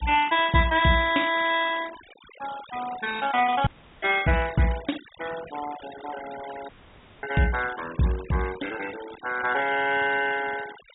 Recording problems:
treble cut off; nothing above 4 kHz
noise reduction artefacts; signal-to-artefact ratio 15 dB
dropout; at 3.5 s and at 6.5 s for 0.5 s

